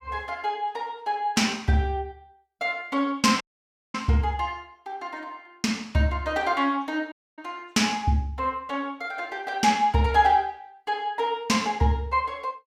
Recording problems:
dropout; at 3.5 s for 0.5 s and at 7 s

